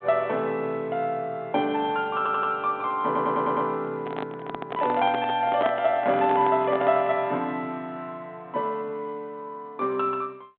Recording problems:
phone line; 170 Hz to 3.5 kHz, G.726
stutter; at 2 s and at 3 s
handling noise; from 4 to 7.5 s; peak -1 dB vs average level

